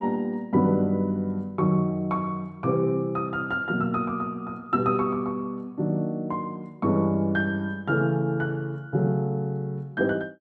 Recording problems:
none

